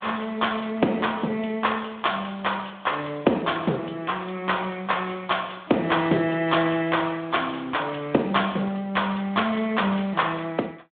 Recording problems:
phone line; 170 Hz to 3.6 kHz, Speex

